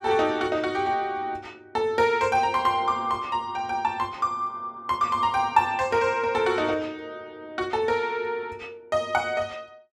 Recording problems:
none

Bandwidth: 14.5 kHz